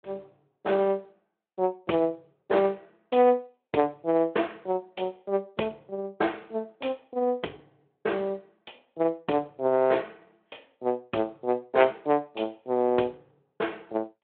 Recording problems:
phone line; 260 Hz to 3.4 kHz, Speex

